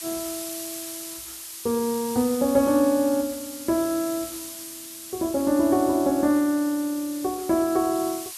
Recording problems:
hiss; slope +4 dB per octave, SNR 11 dB

